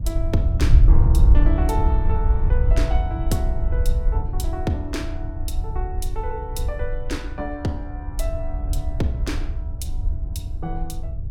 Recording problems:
wind on the microphone; below 72 Hz, SNR -7 dB

